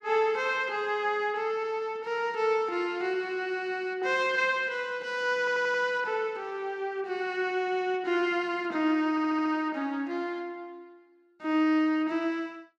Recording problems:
audio stuttering; at 5.5 s and at 9 s

